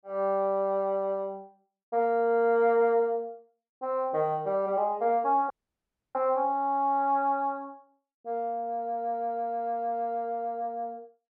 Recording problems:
dropout; at 5.5 s for 0.5 s

